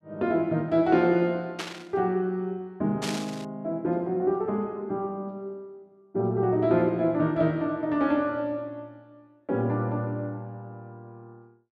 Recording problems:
static burst; at 1.5 s and at 3 s; peak -2 dB vs average level

